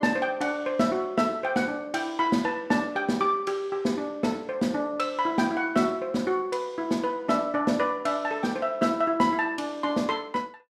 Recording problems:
none

